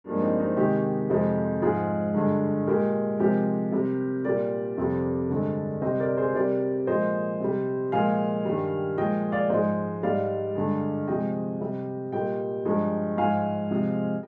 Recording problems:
none

